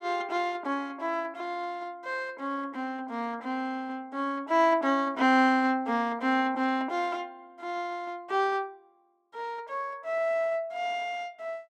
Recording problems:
none

